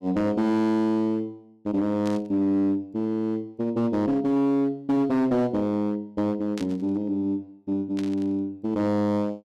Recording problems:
distortion; hard clipping, uneven, signal-to-distortion ratio 11 dB
burst of static; at 2 s, at 6.5 s and at 8 s; peak -9 dB vs average level

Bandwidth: 13.5 kHz